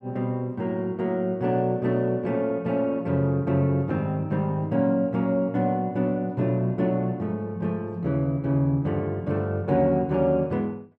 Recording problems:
none

